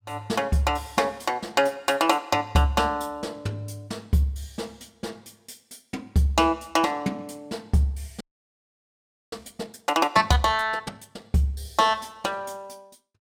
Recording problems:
audio freezing; at 8 s for 1 s

